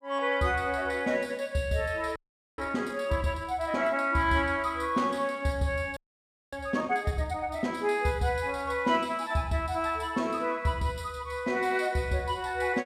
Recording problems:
frozen audio; at 2 s and at 6 s for 0.5 s

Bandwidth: 15 kHz